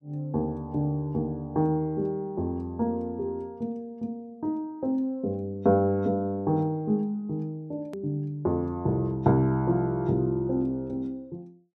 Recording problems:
click at an edit; at 8 s

